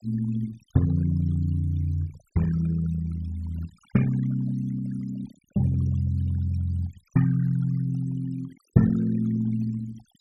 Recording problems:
denoising artefacts; signal-to-artefact ratio 19 dB

